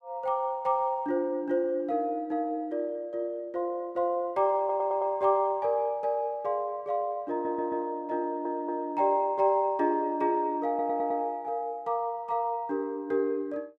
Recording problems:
audio stuttering; 4 times, first at 4.5 s

